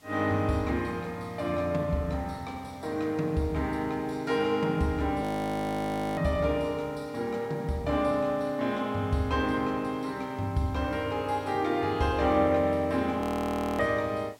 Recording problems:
background hiss; SNR 28 dB
frozen audio; at 5 s for 1 s and at 13 s for 0.5 s

